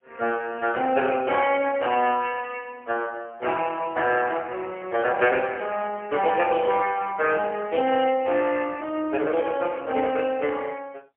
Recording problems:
phone line; 220 Hz to 3.1 kHz, AMR-NB, then MP3

